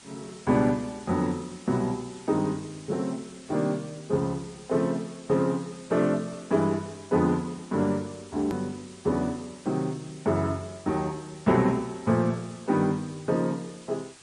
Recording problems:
codec artefacts; MP3, then Vorbis, log-spectral distance 8 dB, nothing above 13.1 kHz
background hiss; slope 0 dB per octave, SNR 21 dB
click at an edit; at 8.5 s

